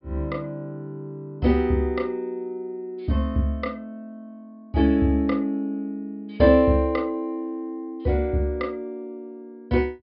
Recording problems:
low-pass filter; nothing above 5.5 kHz

